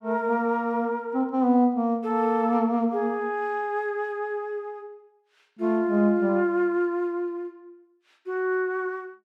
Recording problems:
none

